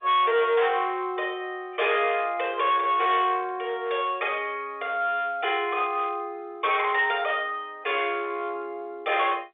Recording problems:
telephone audio; 320 Hz to 3.7 kHz, G.711
distorted audio; hard clipping, uneven, signal-to-distortion ratio 9 dB

